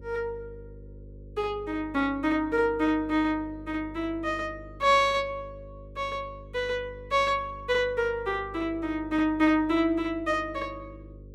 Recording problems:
hum; 50 Hz, harmonics up to 550 Hz, SNR 19 dB

